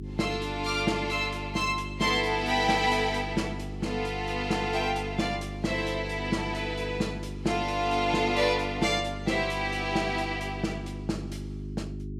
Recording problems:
hum; 50 Hz, harmonics up to 400 Hz, SNR 9 dB

